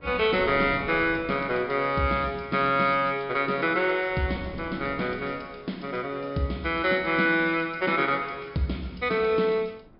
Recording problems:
low-pass filter; nothing above 5.5 kHz
wind on the microphone; below 420 Hz, SNR 19 dB

